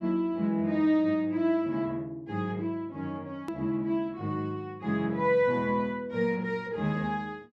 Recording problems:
hard cut with a click; at 3.5 s

